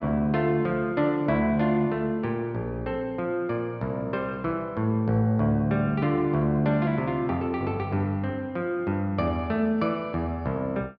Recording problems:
low-pass filter; nothing above 8 kHz

